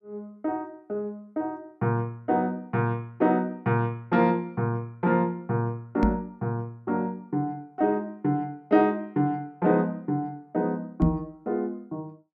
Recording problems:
knock on the microphone; at 6 s and at 11 s; peak +9 dB vs average level

